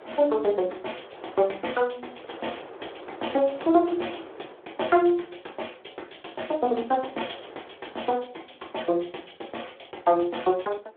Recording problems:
telephone audio; 280 Hz to 3.5 kHz, Speex
wind noise; below 960 Hz, SNR 20 dB

